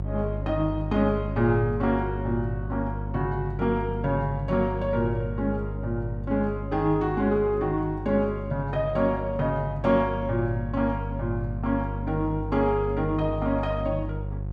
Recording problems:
hum; 50 Hz, harmonics up to 550 Hz, SNR 6 dB

